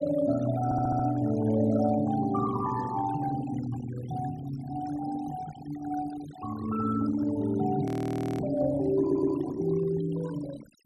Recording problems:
denoising artefacts; signal-to-artefact ratio 17 dB
stutter; at 0.5 s and at 9 s
frozen audio; at 8 s for 0.5 s

